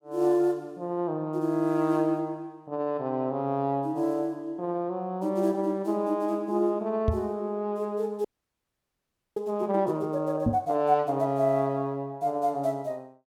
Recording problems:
microphone thump; at 7 s and at 10 s; peak +6 dB vs average level
audio freezing; at 8.5 s for 1 s

